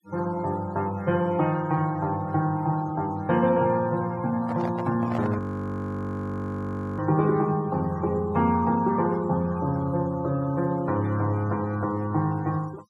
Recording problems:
denoising artefacts; signal-to-artefact ratio 23 dB
microphone handling noise; at 4.5 s; peak -4 dB vs average level
audio freezing; at 5.5 s for 1.5 s

